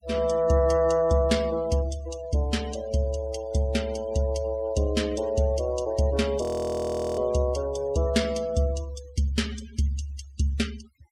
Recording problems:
denoising artefacts; signal-to-artefact ratio 19 dB
audio freezing; at 6.5 s for 1 s

